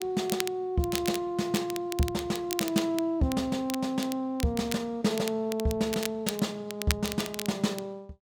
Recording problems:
crackle; vinyl, SNR 8 dB

